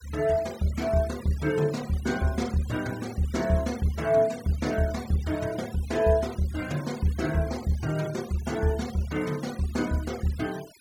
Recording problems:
denoising artefacts; signal-to-artefact ratio 17 dB

